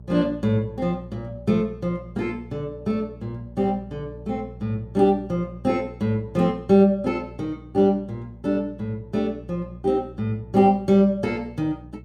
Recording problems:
hum; 60 Hz, harmonics up to 420 Hz, SNR 19 dB

